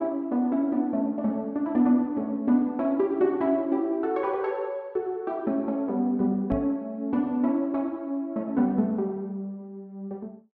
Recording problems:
knock on the microphone; at 6.5 s; peak -4 dB vs average level

